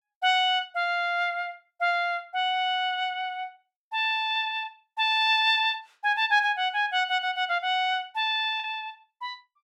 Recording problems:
packet loss; 0.5% of the sound replaced, filled with the last packet

